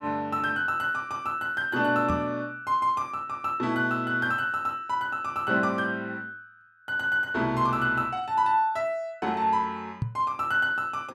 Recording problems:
microphone thump; at 2 s and at 10 s; peak +2 dB vs average level

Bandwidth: 14.5 kHz